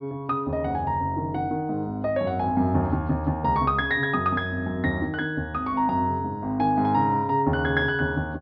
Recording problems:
low-pass filter; nothing above 5.5 kHz

